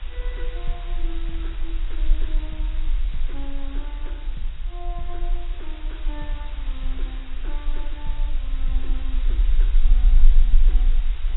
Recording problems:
codec artefacts; AAC, log-spectral distance 3 dB, nothing above 3.9 kHz
hiss; SNR 4 dB
rumble; below 34 Hz, strongest tone 20 Hz, SNR -15 dB

